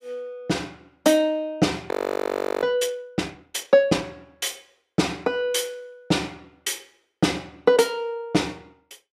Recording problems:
audio freezing; at 2 s for 0.5 s

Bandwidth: 15 kHz